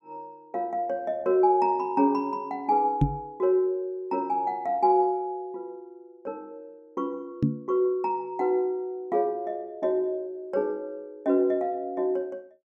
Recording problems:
microphone bump; at 3 s and at 7.5 s; peak +8 dB vs average level

